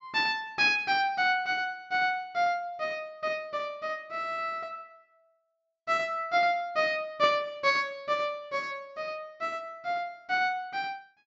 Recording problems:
treble missing; nothing above 7.3 kHz

